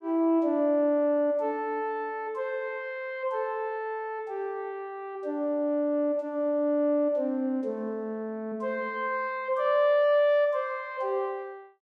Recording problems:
none

